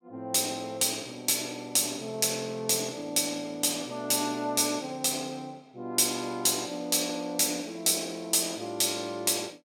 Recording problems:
none

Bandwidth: 16.5 kHz